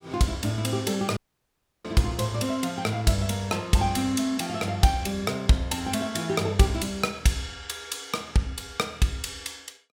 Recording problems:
audio cutting out; at 1 s for 0.5 s

